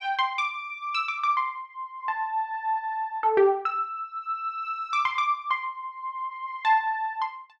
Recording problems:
none

